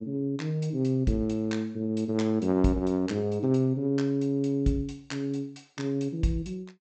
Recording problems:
treble missing; nothing above 8 kHz

